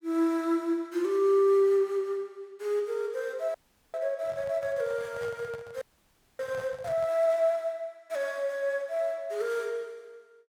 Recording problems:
audio freezing; at 3.5 s and at 6 s for 0.5 s
handling noise; from 4 to 7 s; peak -12 dB vs average level

